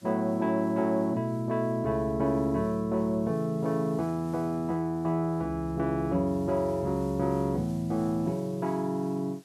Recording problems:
hiss; slope 0 dB per octave, SNR 28 dB

